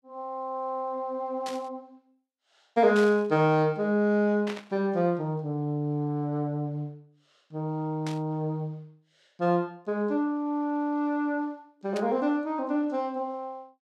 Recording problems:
static burst; 5 times, first at 1.5 s; peak -6 dB vs average level

